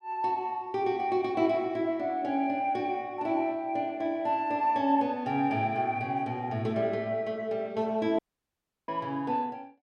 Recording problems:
audio cutting out; at 8 s for 0.5 s

